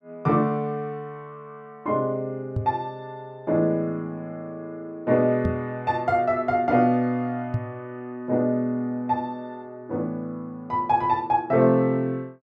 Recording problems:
knock on the microphone; at 2.5 s, at 5.5 s and at 7.5 s; peak +2 dB vs average level

